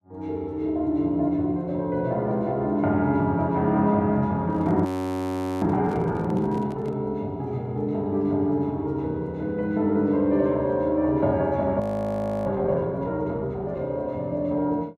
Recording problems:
microphone handling noise; from 4.5 to 7 s; peak -10 dB vs average level
audio freezing; at 5 s for 1 s and at 12 s for 0.5 s

